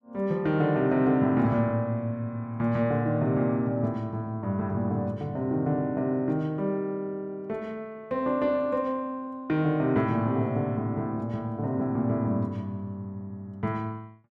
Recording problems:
none

